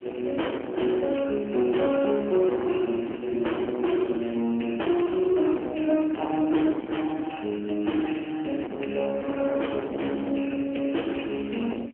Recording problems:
phone line; 190 Hz to 3.1 kHz, AMR-NB
distorted audio; soft clipping, signal-to-distortion ratio 7 dB

